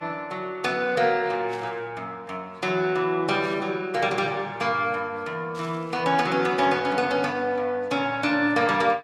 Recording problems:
lossy compression; Vorbis, log-spectral distance 2 dB, nothing above 13.8 kHz
burst of static; at 1.5 s, at 3.5 s and at 5.5 s; peak -13 dB vs average level

